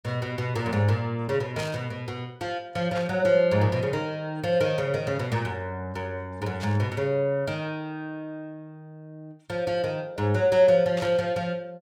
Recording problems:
static burst; 4 times, first at 1.5 s; peak -7 dB vs average level

